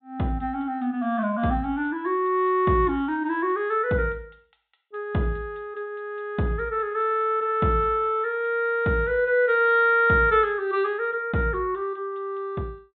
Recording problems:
treble missing; nothing above 4 kHz

